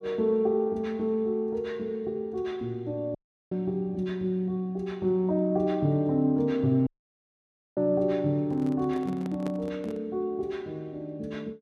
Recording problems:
dropout; at 3 s and at 7 s for 1 s
handling noise; from 8.5 to 10 s; peak -6 dB vs average level

